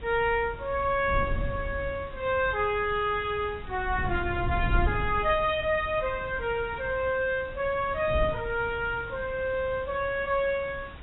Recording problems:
lossy codec; AAC, log-spectral distance 4 dB, nothing above 3.4 kHz
hiss; SNR 22 dB
wind on the microphone; below 110 Hz, SNR 10 dB
crackle; from 2.5 to 3.5 s; loose cable, SNR 30 dB

